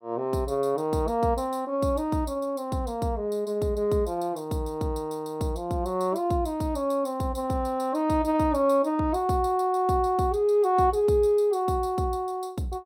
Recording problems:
none

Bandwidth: 16.5 kHz